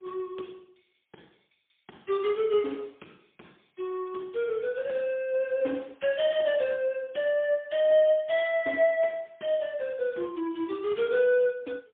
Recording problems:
telephone audio; 240 Hz to 3.5 kHz, AMR-NB, then MP3

